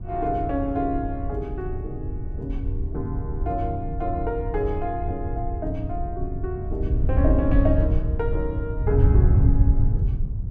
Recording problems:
wind on the microphone; below 100 Hz, SNR -3 dB

